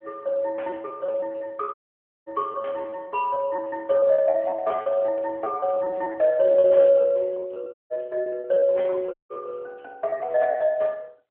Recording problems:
phone line; 280 Hz to 3.4 kHz, AMR-NB
packet loss; 17% of the sound replaced, filled with repeated pitch periods
dropout; at 1.5 s for 0.5 s, at 7.5 s and at 9 s

